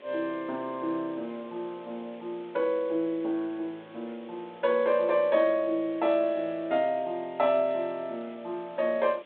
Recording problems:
phone line; 260 Hz to 4 kHz, G.726
background hiss; SNR 24 dB

